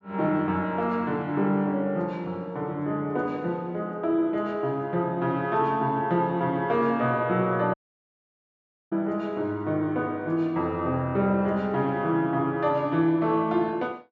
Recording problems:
low-pass filter; nothing above 8 kHz
audio cutting out; at 7.5 s for 1 s

